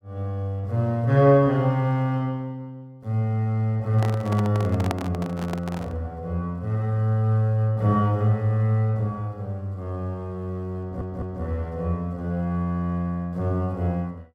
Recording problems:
handling noise; from 4 to 6 s; peak +1 dB vs average level
audio stuttering; at 11 s

